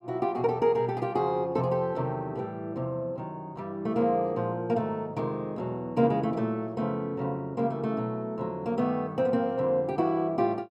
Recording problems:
none

